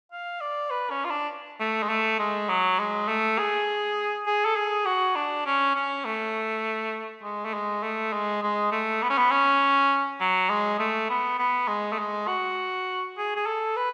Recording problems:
none

